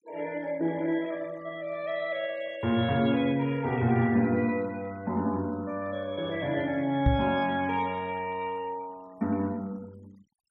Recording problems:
noise reduction artefacts; signal-to-artefact ratio 25 dB
knock on the microphone; at 7 s; peak +8 dB vs average level

